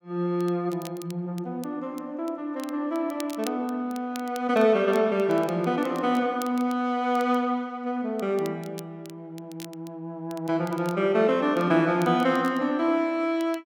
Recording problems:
crackle; vinyl, SNR 22 dB

